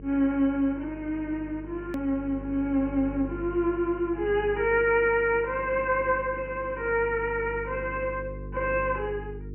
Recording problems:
low-pass filter; nothing above 3 kHz
electrical hum; 50 Hz, harmonics up to 450 Hz, SNR 14 dB
hard cut with a click; at 2 s

